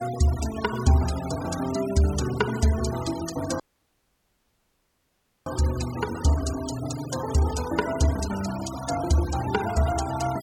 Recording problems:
denoising artefacts; signal-to-artefact ratio 13 dB
audio cutting out; at 3.5 s for 2 s

